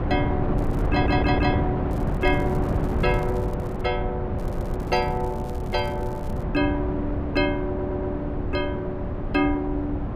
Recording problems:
wind on the microphone; below 280 Hz, SNR 1 dB
crackling; at 0.5 s, from 2 to 4 s and from 4.5 to 6.5 s; loose cable, SNR 26 dB
stutter; at 1 s, at 4.5 s and at 7.5 s

